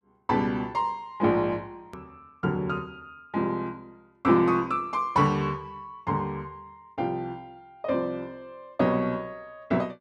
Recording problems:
hard cut with a click; at 2 s

